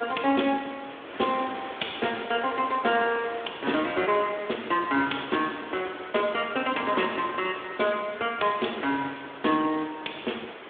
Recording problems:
telephone audio; 240 Hz to 3.6 kHz, Speex
background hiss; SNR 13 dB

